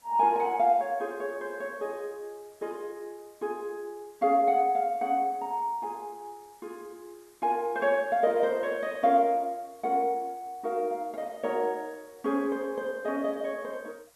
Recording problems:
hiss; SNR 30 dB

